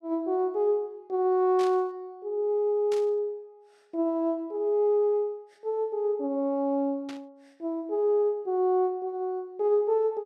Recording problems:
burst of static; at 1.5 s, at 3 s and at 7 s; peak -11 dB vs average level

